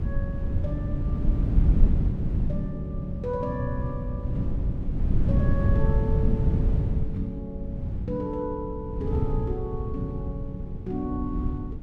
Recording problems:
wind on the microphone; below 120 Hz, SNR -6 dB

